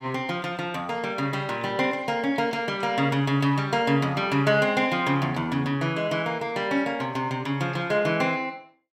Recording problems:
none

